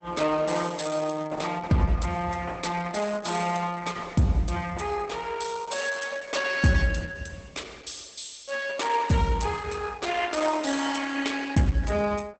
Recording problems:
lossy compression; Opus, log-spectral distance 6 dB, nothing above 8.2 kHz

